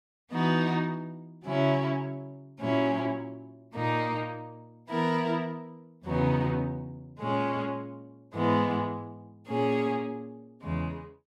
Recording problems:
none

